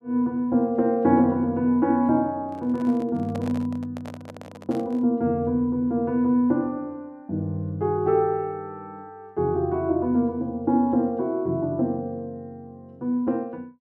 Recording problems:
microphone handling noise; from 2.5 to 5 s; peak -9 dB vs average level

